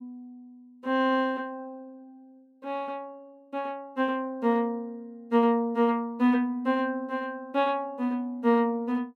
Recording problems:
none

